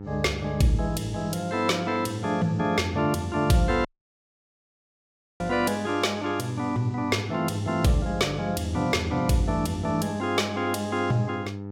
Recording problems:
electrical hum; 50 Hz, harmonics up to 1.3 kHz, SNR 11 dB
audio cutting out; at 4 s for 1.5 s

